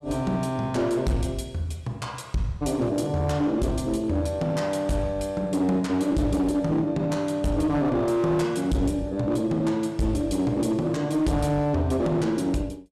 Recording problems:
distortion; hard clipping, uneven, signal-to-distortion ratio 11 dB

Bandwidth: 14 kHz